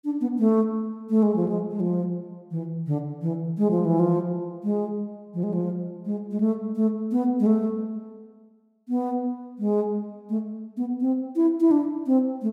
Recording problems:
none

